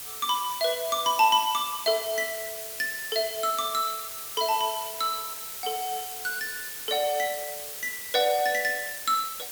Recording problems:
hiss; SNR 7 dB

